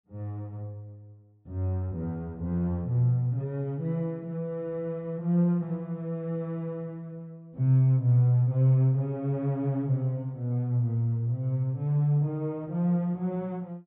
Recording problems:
treble missing; nothing above 4 kHz

